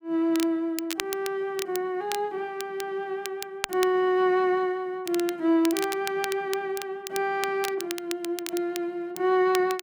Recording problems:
crackling; vinyl, SNR 10 dB

